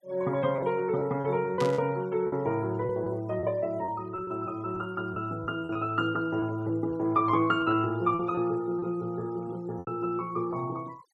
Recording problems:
denoising artefacts; signal-to-artefact ratio 26 dB
packet loss; 7% of the sound replaced, filled with repeated pitch periods
burst of static; at 1.5 s; peak -4 dB vs average level

